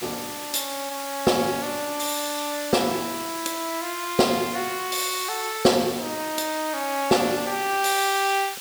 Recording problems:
hiss; SNR 8 dB

